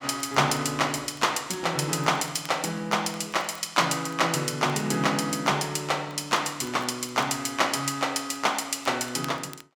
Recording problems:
crackling; vinyl, SNR 25 dB

